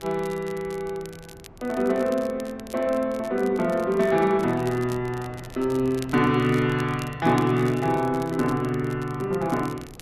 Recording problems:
wind noise; below 510 Hz, SNR 21 dB
crackling; vinyl, SNR 22 dB

